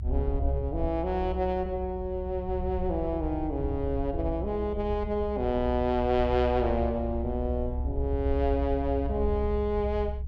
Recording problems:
rumble; below 68 Hz, strongest tone 66 Hz, SNR 5 dB

